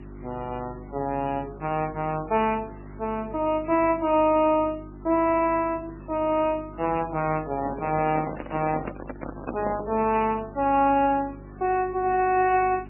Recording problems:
lossy codec; MP3, then MP3, log-spectral distance 6 dB, nothing above 2.8 kHz
mains hum; 50 Hz, harmonics up to 400 Hz, SNR 18 dB
background hiss; SNR 27 dB
handling noise; from 7.5 to 10 s; peak -3 dB vs average level

